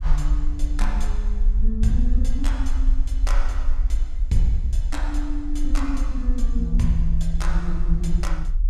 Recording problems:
rumble; below 44 Hz, SNR -3 dB

